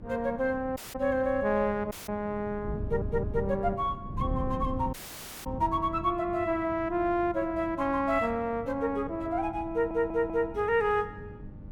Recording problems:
hum; 50 Hz, harmonics up to 1.2 kHz, SNR 20 dB
wind noise; below 170 Hz, SNR 12 dB
audio cutting out; at 1 s, at 2 s and at 5 s for 0.5 s
stutter; at 3 s and at 9.5 s

